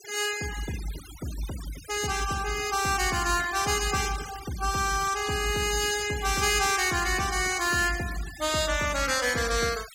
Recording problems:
noise reduction artefacts; signal-to-artefact ratio 13 dB

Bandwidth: 16.5 kHz